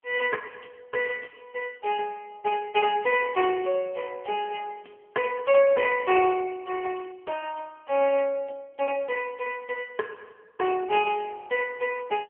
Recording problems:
phone line; 300 Hz to 3.1 kHz, AMR-NB

